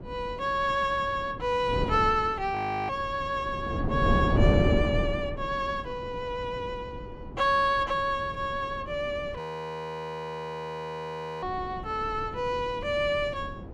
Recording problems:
wind noise; below 320 Hz, SNR 5 dB
frozen audio; at 2.5 s and at 9.5 s for 2 s

